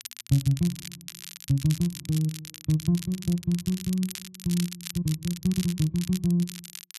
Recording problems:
crackle; vinyl, SNR 12 dB

